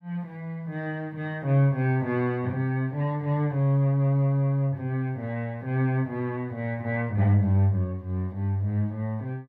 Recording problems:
none

